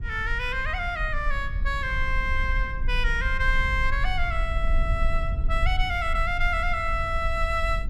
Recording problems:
low-frequency rumble; below 54 Hz, strongest tone 24 Hz, SNR 3 dB

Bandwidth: 13.5 kHz